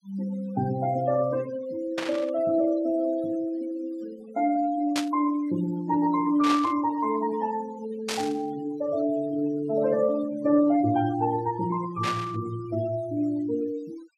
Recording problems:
denoising artefacts; signal-to-artefact ratio 18 dB
static burst; 5 times, first at 2 s; peak +1 dB vs average level

